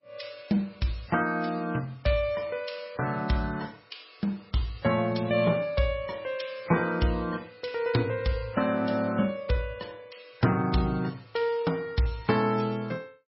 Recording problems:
lossy compression; MP3, log-spectral distance 4 dB, nothing above 5.5 kHz

